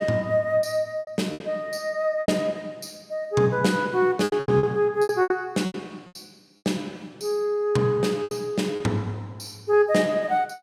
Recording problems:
packet loss; 9% of the sound replaced, filled with repeated pitch periods

